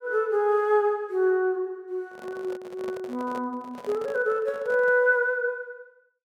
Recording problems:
microphone handling noise; from 2 to 5 s; peak -10 dB vs average level

